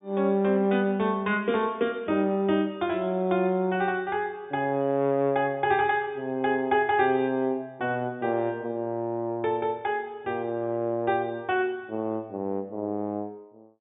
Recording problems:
low-pass filter; nothing above 3.7 kHz

